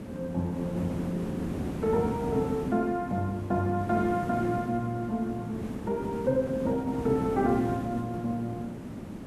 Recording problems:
background hiss; slope -8 dB per octave, SNR 6 dB

